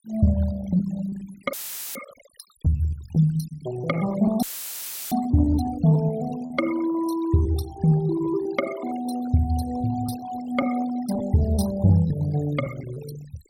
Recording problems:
noise reduction artefacts; signal-to-artefact ratio 17 dB
packet loss; 7% of the sound replaced, filled with repeated pitch periods
dropout; at 1.5 s and at 4.5 s for 0.5 s; filled with static

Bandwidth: 16.5 kHz